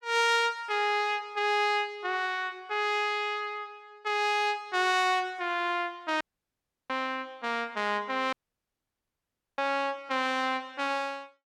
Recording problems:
dropout; at 6 s for 0.5 s and at 8.5 s for 1.5 s

